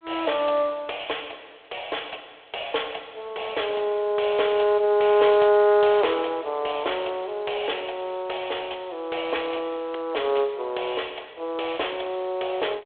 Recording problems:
telephone audio; 340 Hz to 3.6 kHz, G.726

